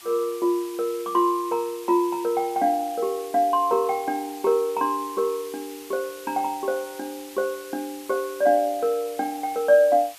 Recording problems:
background hiss; slope +2 dB per octave, SNR 18 dB

